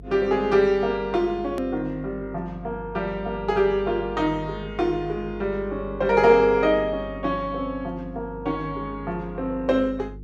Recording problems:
hum; 50 Hz, harmonics up to 450 Hz, SNR 17 dB
click at an edit; at 1.5 s

